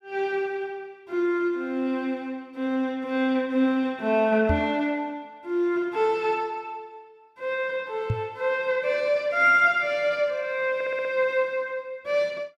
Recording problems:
knock on the microphone; at 4.5 s and at 8 s; peak +2 dB vs average level
audio stuttering; at 11 s

